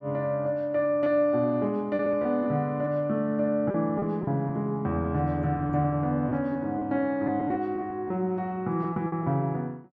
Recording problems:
lost packets; 6% of the sound replaced, filled with repeated pitch periods

